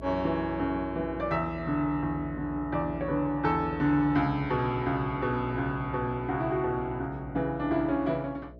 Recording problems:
hum; 60 Hz, harmonics up to 660 Hz, SNR 14 dB

